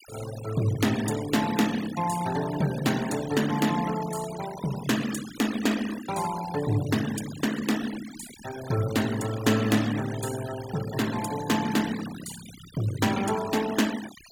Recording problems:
noise reduction artefacts; signal-to-artefact ratio 12 dB

